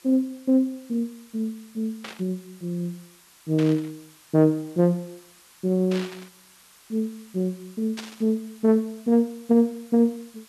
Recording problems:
hiss; SNR 26 dB
static burst; 4 times, first at 2 s; peak -7 dB vs average level

